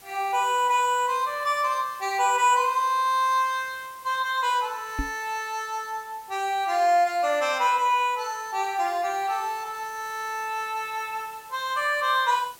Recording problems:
hiss; slope -1 dB per octave, SNR 23 dB
microphone thump; at 5 s; peak -2 dB vs average level

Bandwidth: 16.5 kHz